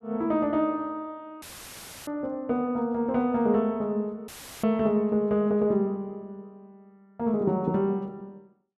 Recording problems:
dropout; at 1.5 s for 0.5 s and at 4.5 s; filled with static

